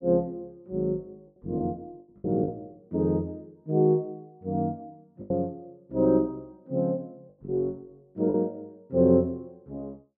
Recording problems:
packet loss; 3% of the sound replaced, filled with the last packet

